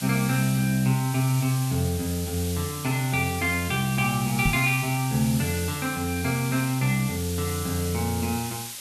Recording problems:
background hiss; SNR 9 dB
microphone bump; at 4.5 s; peak +4 dB vs average level

